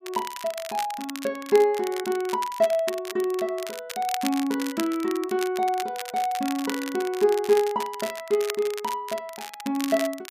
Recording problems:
crackling; vinyl, SNR 11 dB

